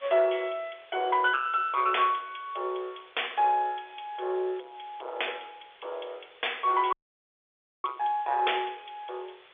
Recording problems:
telephone audio; 320 Hz to 3.6 kHz, G.711
distortion; soft clipping, signal-to-distortion ratio 11 dB
background hiss; SNR 25 dB
dropout; at 7 s for 1 s

